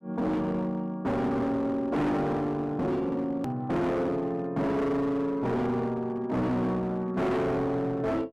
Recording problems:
distortion; hard clipping, uneven, signal-to-distortion ratio 8 dB
edit click; at 3.5 s

